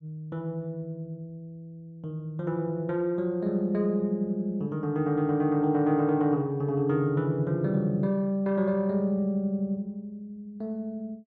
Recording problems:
none

